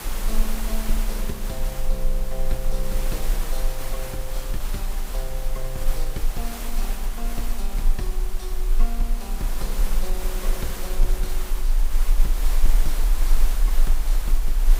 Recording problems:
hum; 50 Hz, harmonics up to 500 Hz, SNR 21 dB
background hiss; slope -3 dB per octave, SNR -1 dB
rumble; below 32 Hz, strongest tone 20 Hz, SNR -8 dB

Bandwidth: 15.5 kHz